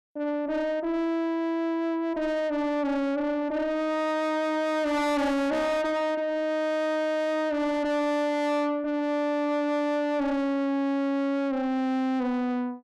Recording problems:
distorted audio; soft clipping, signal-to-distortion ratio 5 dB

